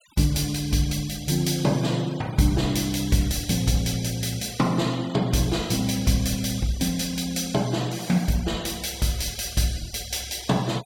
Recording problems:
noise reduction artefacts; signal-to-artefact ratio 19 dB

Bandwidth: 17.5 kHz